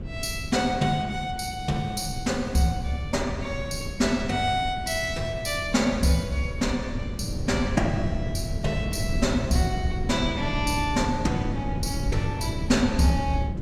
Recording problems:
wind on the microphone; below 170 Hz, SNR 6 dB

